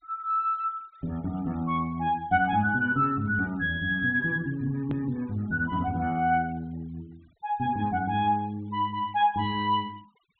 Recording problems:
low-pass filter; nothing above 4 kHz
denoising artefacts; signal-to-artefact ratio 28 dB
click at an edit; at 5 s

